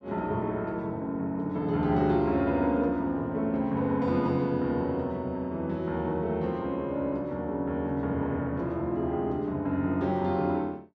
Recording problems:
none

